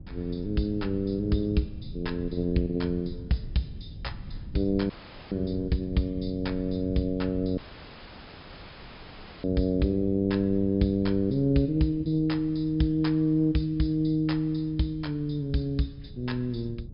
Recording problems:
low-pass filter; nothing above 5.5 kHz
rumble; below 140 Hz, SNR 15 dB
dropout; at 5 s and at 7.5 s for 2 s

